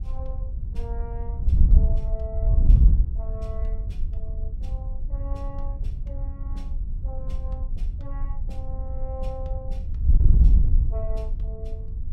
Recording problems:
wind noise; below 64 Hz, SNR -16 dB

